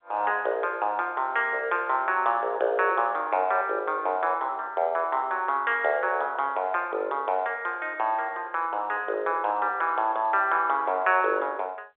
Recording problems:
phone line; 340 Hz to 3.6 kHz, G.711

